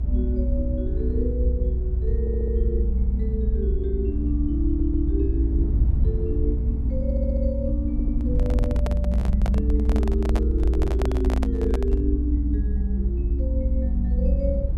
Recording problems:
low-frequency rumble; below 62 Hz, strongest tone 60 Hz, SNR -5 dB
audio stuttering; 4 times, first at 2 s
microphone handling noise; from 8 to 12 s; peak +2 dB vs average level

